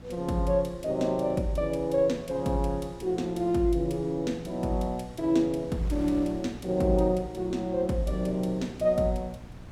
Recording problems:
electrical hum; 60 Hz, harmonics up to 900 Hz, SNR 20 dB
wind noise; below 400 Hz, SNR 20 dB

